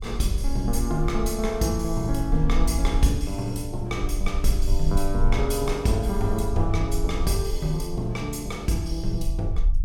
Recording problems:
rumble; below 50 Hz, strongest tone 24 Hz, SNR 3 dB

